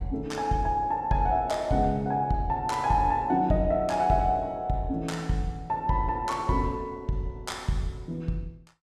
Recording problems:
none

